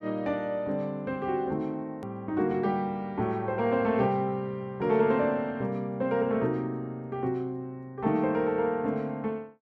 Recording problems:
hard cut with a click; at 2 s

